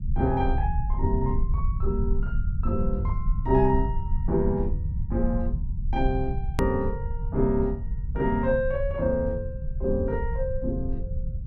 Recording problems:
rumble; below 80 Hz, SNR 2 dB
hard cut with a click; at 6.5 s

